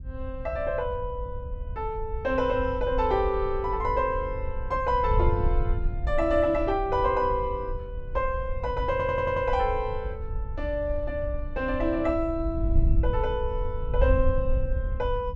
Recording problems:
low-pass filter; nothing above 7.9 kHz
wind on the microphone; below 70 Hz, SNR 5 dB
stutter; at 9 s

